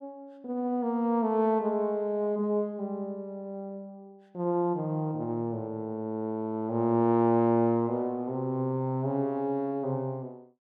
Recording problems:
none

